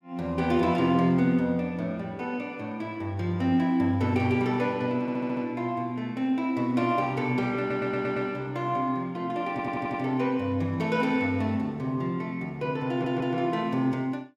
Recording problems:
stutter; 4 times, first at 5 s

